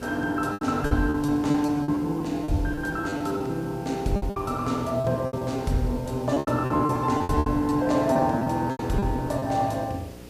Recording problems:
electrical hum; 60 Hz, harmonics up to 600 Hz, SNR 18 dB
background hiss; slope -4 dB per octave, SNR 22 dB
lost packets; 14% of the sound replaced, filled with repeated pitch periods

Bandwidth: 15 kHz